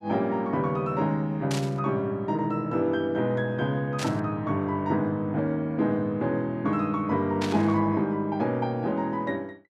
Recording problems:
burst of static; at 1.5 s, at 4 s and at 7.5 s; peak -2 dB vs average level

